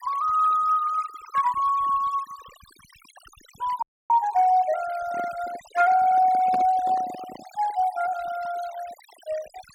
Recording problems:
noise reduction artefacts; signal-to-artefact ratio 20 dB
audio freezing; at 4 s
microphone handling noise; from 5 to 7.5 s; peak -7 dB vs average level

